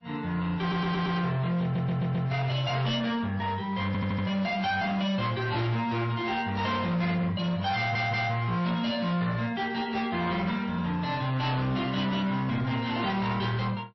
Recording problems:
codec artefacts; MP3, then AAC, log-spectral distance 2 dB, nothing above 5.7 kHz
distortion; hard clipping, signal-to-distortion ratio 10 dB
audio stuttering; 4 times, first at 0.5 s

